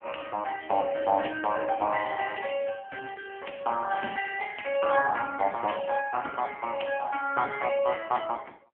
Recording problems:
telephone audio; 260 Hz to 3.1 kHz, AMR-NB

